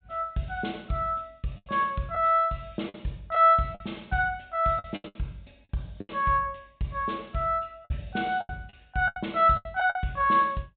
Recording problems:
low-pass filter; nothing above 4 kHz
lost packets; 8% of the sound replaced, filled with the last packet

